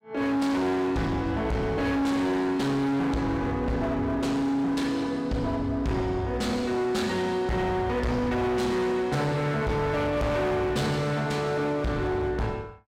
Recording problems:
distorted audio; hard clipping, uneven, signal-to-distortion ratio 8 dB

